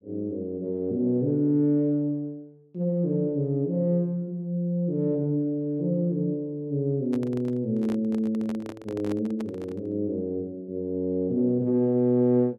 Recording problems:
handling noise; from 7 to 10 s; peak -7 dB vs average level

